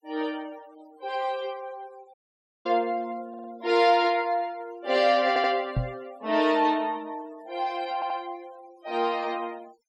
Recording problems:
denoising artefacts; signal-to-artefact ratio 25 dB
dropout; at 2 s for 0.5 s
stutter; at 3.5 s, at 5.5 s and at 8 s
knock on the microphone; at 6 s; peak +3 dB vs average level

